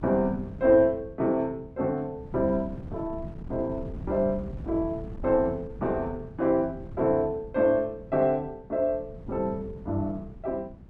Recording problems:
wind on the microphone; below 190 Hz, SNR 14 dB

